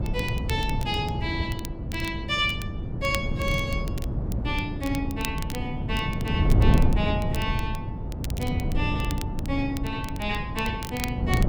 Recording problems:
wind on the microphone; below 170 Hz, SNR -1 dB
crackle; vinyl, SNR 12 dB

